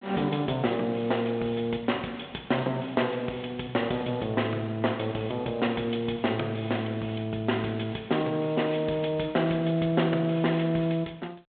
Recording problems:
telephone audio; 300 Hz to 3.8 kHz, G.726

